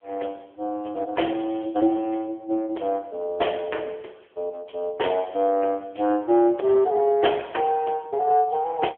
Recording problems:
phone line; 300 Hz to 3.3 kHz, AMR-NB

